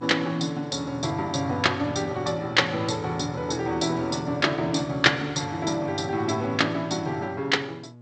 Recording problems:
codec artefacts; G.722, log-spectral distance 4 dB, nothing above 8 kHz
hum; 60 Hz, harmonics up to 840 Hz, SNR 20 dB

